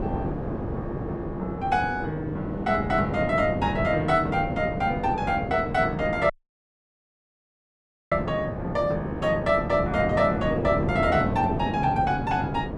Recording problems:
wind noise; below 440 Hz, SNR 5 dB
dropout; at 6.5 s for 2 s

